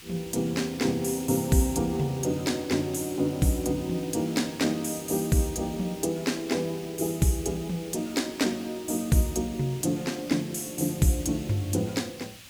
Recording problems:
background hiss; SNR 17 dB

